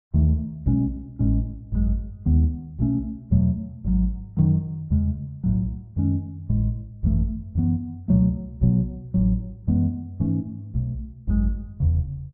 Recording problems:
none

